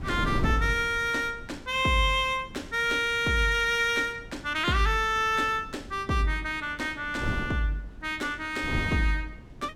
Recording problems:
wind on the microphone; below 270 Hz, SNR 13 dB

